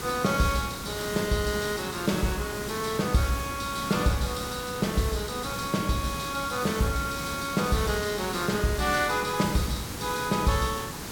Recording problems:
background hiss; SNR 7 dB

